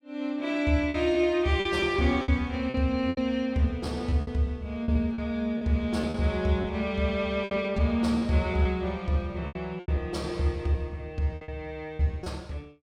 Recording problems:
lost packets; 9% of the sound replaced, filled with repeated pitch periods

